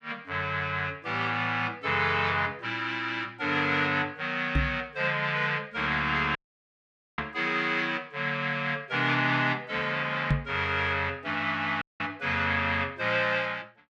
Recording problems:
microphone bump; at 4.5 s and at 10 s; peak +5 dB vs average level
audio cutting out; at 6.5 s for 1 s and at 12 s

